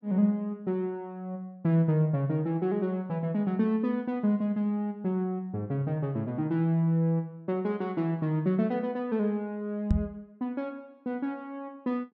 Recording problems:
microphone bump; at 10 s; peak +7 dB vs average level

